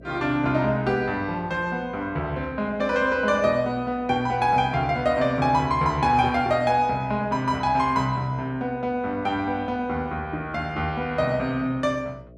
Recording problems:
hum; 60 Hz, harmonics up to 660 Hz, SNR 23 dB

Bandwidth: 13.5 kHz